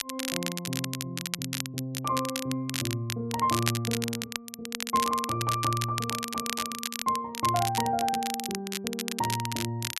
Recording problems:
crackling; vinyl, SNR 3 dB

